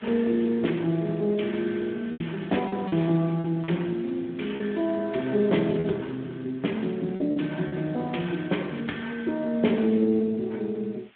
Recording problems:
phone line; 170 Hz to 3.4 kHz, Speex
hiss; SNR 27 dB
lost packets; 4% of the sound replaced, filled with repeated pitch periods

